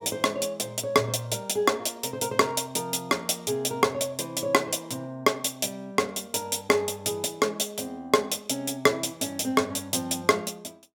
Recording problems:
none

